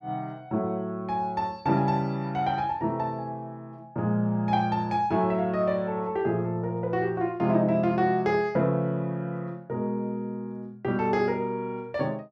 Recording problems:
none

